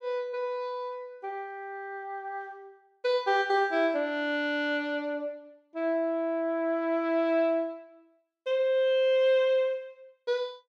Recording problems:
none

